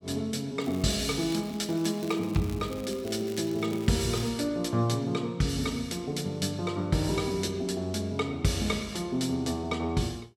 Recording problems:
crackle; from 0.5 to 4.5 s; loose cable, SNR 18 dB

